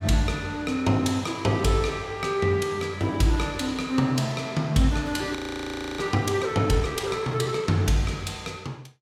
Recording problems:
frozen audio; at 5.5 s for 0.5 s

